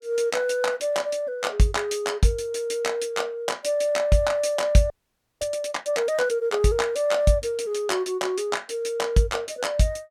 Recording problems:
audio freezing; at 5 s for 0.5 s

